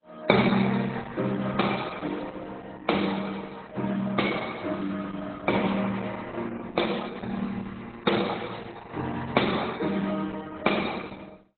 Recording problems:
lossy codec; MP3, then Opus, log-spectral distance 6 dB, nothing above 4 kHz

